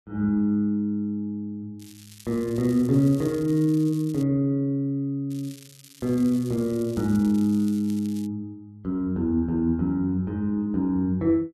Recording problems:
crackle; from 2 to 4 s and from 5.5 to 8.5 s; loose cable, SNR 23 dB

